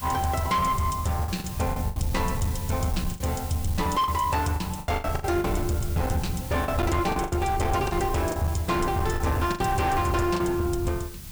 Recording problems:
distortion; hard clipping, uneven, signal-to-distortion ratio 12 dB
hiss; slope 0 dB per octave, SNR 14 dB
low-frequency rumble; below 120 Hz, SNR 8 dB
packet loss; 9% of the sound replaced, filled with the last packet

